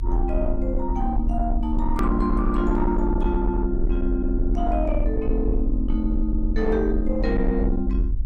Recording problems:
distortion; soft clipping, signal-to-distortion ratio 12 dB
hum; 60 Hz, harmonics up to 600 Hz, SNR 22 dB
rumble; below 46 Hz, SNR 2 dB
edit click; at 2 s

